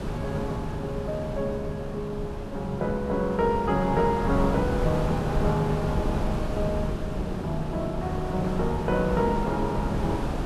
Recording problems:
wind noise; below 400 Hz, SNR 3 dB

